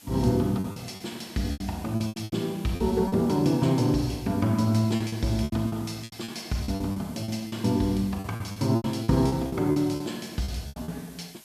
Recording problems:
background hiss; slope 0 dB per octave, SNR 22 dB
packet loss; 14% of the sound replaced, filled with repeated pitch periods

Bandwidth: 14 kHz